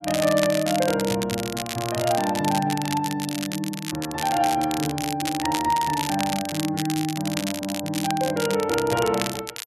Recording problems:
crackling; vinyl, SNR 7 dB

